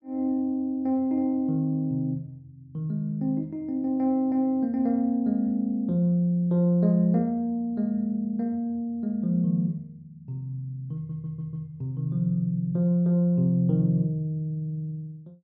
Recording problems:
stutter; at 11 s

